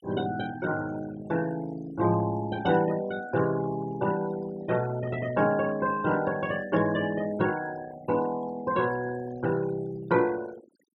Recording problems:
denoising artefacts; signal-to-artefact ratio 17 dB

